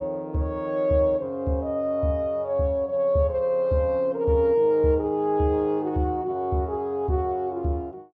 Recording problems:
none

